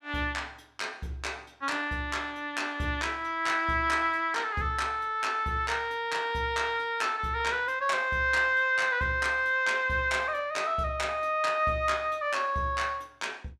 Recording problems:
none

